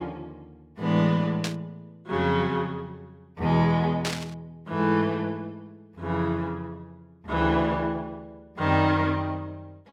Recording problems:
static burst; at 1.5 s and at 4 s; peak 0 dB vs average level

